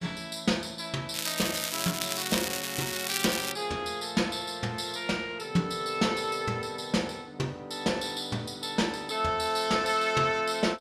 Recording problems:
crackle; from 1 to 3.5 s; loose cable, SNR 2 dB

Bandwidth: 14.5 kHz